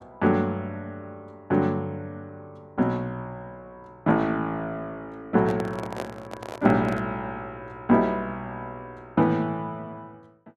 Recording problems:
handling noise; from 5.5 to 7 s; peak -3 dB vs average level

